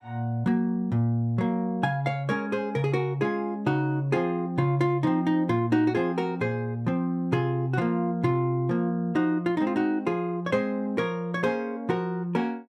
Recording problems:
none

